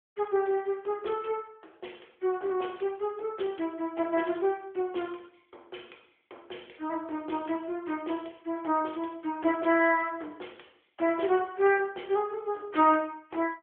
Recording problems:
phone line; 260 Hz to 3.4 kHz, AMR-NB

